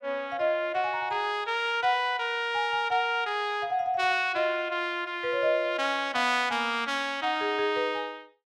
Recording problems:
none

